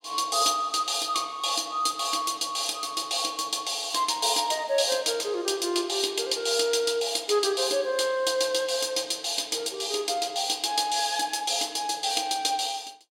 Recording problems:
none

